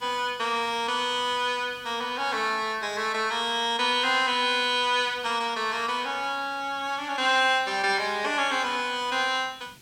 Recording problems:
hiss; SNR 27 dB

